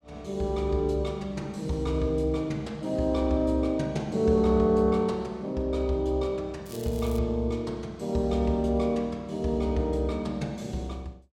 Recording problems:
crackle; at 6.5 s; loose cable, SNR 20 dB

